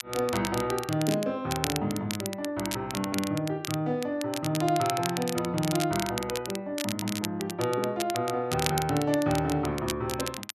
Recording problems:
crackle; vinyl, SNR 7 dB

